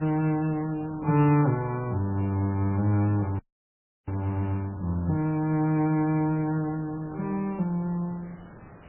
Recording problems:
lossy codec; MP3, log-spectral distance 3 dB, nothing above 2.5 kHz
background hiss; SNR 20 dB
audio freezing; at 3.5 s for 0.5 s

